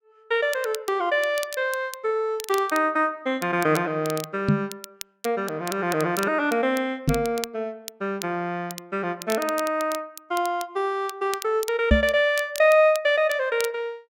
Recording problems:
crackle; vinyl, SNR 15 dB
knock on the microphone; at 4.5 s, at 7 s and at 12 s; peak +8 dB vs average level

